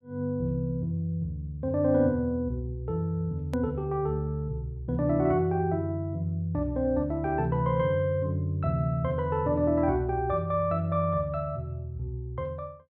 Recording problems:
edit click; at 3.5 s

